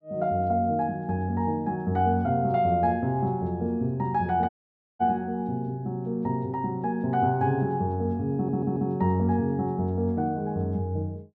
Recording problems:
dropout; at 4.5 s for 0.5 s
audio stuttering; at 8.5 s

